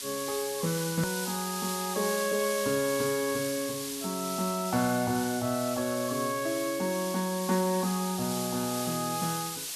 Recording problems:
hiss; slope +3 dB per octave, SNR 5 dB
edit click; at 1 s

